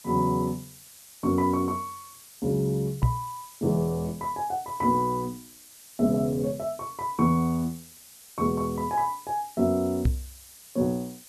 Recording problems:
hiss; slope +2 dB per octave, SNR 19 dB
knock on the microphone; at 3 s and at 10 s; peak +8 dB vs average level

